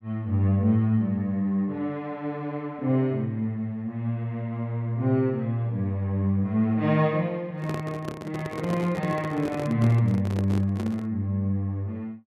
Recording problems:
microphone handling noise; from 7.5 to 11 s; peak -4 dB vs average level

